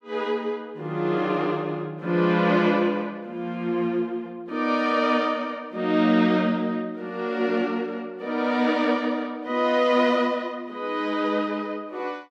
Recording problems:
none

